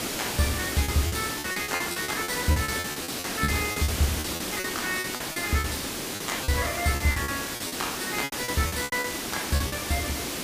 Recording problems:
background hiss; SNR 1 dB
lost packets; 16% of the sound replaced, filled with repeated pitch periods

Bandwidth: 15 kHz